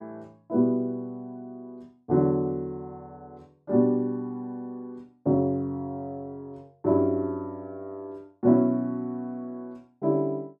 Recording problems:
none

